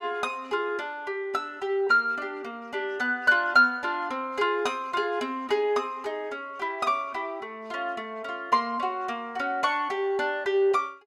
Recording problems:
none

